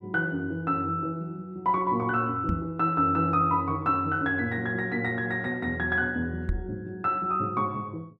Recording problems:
microphone thump; at 2.5 s and at 6.5 s; peak +3 dB vs average level

